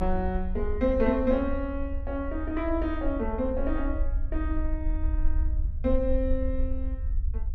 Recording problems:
rumble; below 58 Hz, strongest tone 22 Hz, SNR 3 dB

